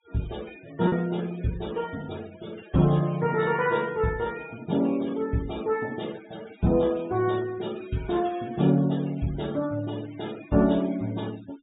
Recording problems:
treble missing; nothing above 4 kHz
noise reduction artefacts; signal-to-artefact ratio 20 dB
packet loss; 0.4% of the sound replaced, filled with repeated pitch periods

